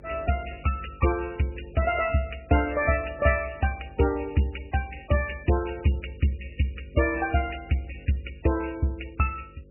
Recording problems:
lossy codec; MP3, log-spectral distance 10 dB, nothing above 2.4 kHz
hum; 50 Hz, harmonics up to 550 Hz, SNR 22 dB

